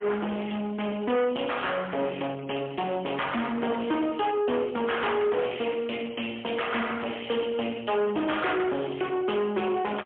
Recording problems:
telephone audio; 190 Hz to 3.4 kHz, AMR-NB, then MP3
distorted audio; soft clipping, signal-to-distortion ratio 7 dB

